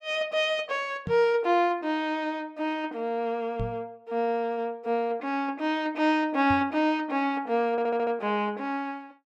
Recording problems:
microphone bump; at 1 s, at 3.5 s and at 6.5 s; peak -2 dB vs average level
audio stuttering; at 7.5 s

